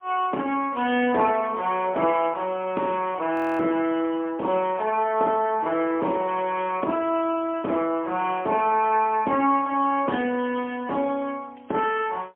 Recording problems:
phone line; 220 Hz to 3.3 kHz, AMR-NB, then MP3
frozen audio; at 3.5 s

